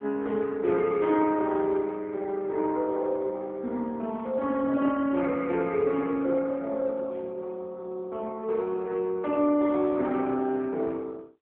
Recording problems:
telephone audio; 220 Hz to 3.4 kHz, AMR-NB

